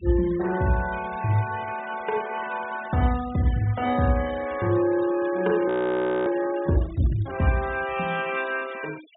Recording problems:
treble missing; nothing above 4 kHz
noise reduction artefacts; signal-to-artefact ratio 17 dB
frozen audio; at 5.5 s for 0.5 s

